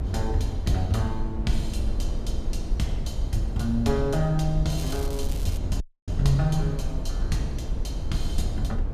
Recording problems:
rumble; below 70 Hz, SNR 3 dB
crackling; at 4.5 s; loose cable, SNR 14 dB
audio cutting out; at 6 s

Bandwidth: 14.5 kHz